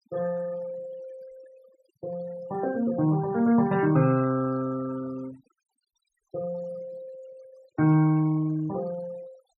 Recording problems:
noise reduction artefacts; signal-to-artefact ratio 22 dB

